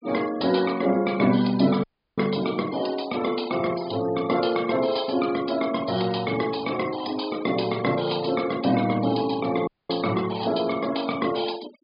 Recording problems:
treble cut off; nothing above 5 kHz
noise reduction artefacts; signal-to-artefact ratio 18 dB
audio cutting out; at 2 s and at 9.5 s

